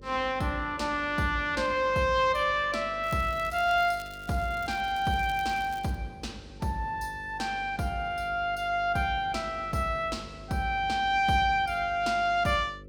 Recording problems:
electrical hum; 50 Hz, harmonics up to 550 Hz, SNR 20 dB
crackle; from 3 to 6 s; loose cable, SNR 22 dB

